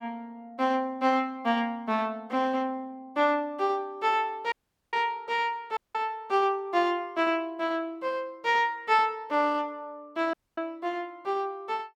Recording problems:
dropout; at 4.5 s, at 6 s and at 10 s

